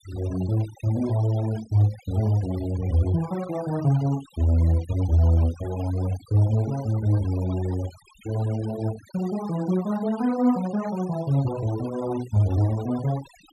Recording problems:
noise reduction artefacts; signal-to-artefact ratio 19 dB

